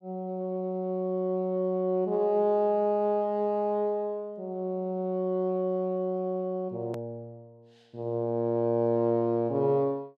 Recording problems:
edit click; at 7 s

